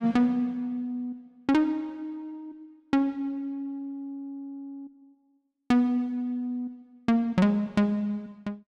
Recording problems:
none

